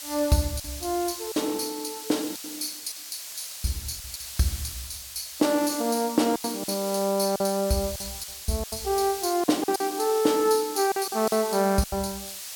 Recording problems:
background hiss; SNR 9 dB
packet loss; 8% of the sound replaced, filled with silence

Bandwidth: 17.5 kHz